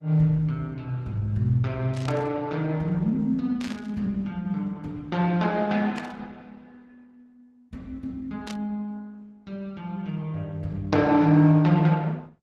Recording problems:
lossy codec; Opus, log-spectral distance 2 dB, nothing above 11.3 kHz
static burst; 4 times, first at 2 s; peak -9 dB vs average level

